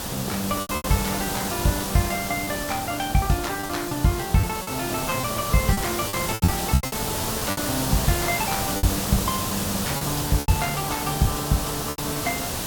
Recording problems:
hiss; SNR 1 dB
lost packets; 9% of the sound replaced, filled with repeated pitch periods

